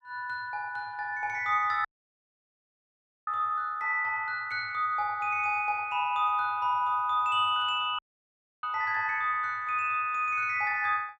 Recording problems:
dropout; at 2 s for 1.5 s and at 8 s for 0.5 s

